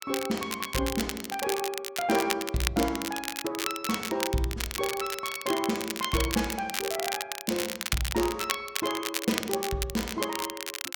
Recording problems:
crackle; vinyl, SNR 3 dB

